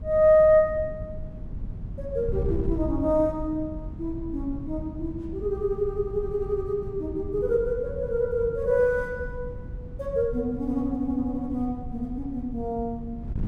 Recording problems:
wind on the microphone; below 140 Hz, SNR 11 dB

